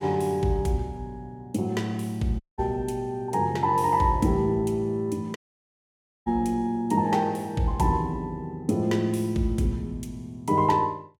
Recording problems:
dropout; at 2.5 s and at 5.5 s for 1 s

